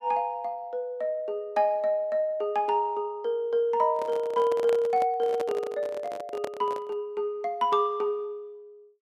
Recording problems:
microphone handling noise; from 4 to 7 s; peak -2 dB vs average level

